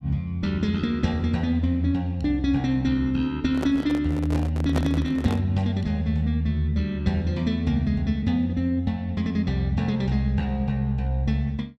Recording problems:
microphone handling noise; from 3.5 to 5.5 s; peak 0 dB vs average level

